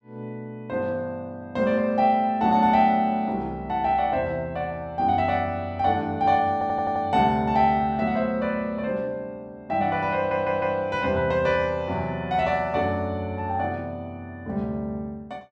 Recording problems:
stutter; at 6.5 s and at 10 s

